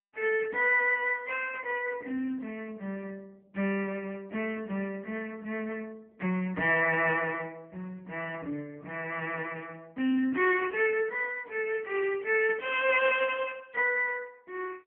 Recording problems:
phone line; 170 Hz to 3.1 kHz, AMR-NB

